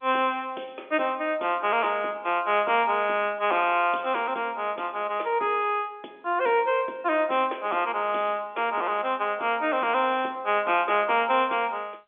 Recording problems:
phone line; 280 Hz to 3.5 kHz, G.711

